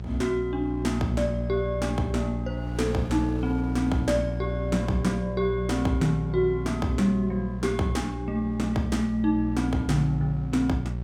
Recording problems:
hum; 60 Hz, harmonics up to 600 Hz, SNR 5 dB
wind noise; below 1.1 kHz, SNR 25 dB

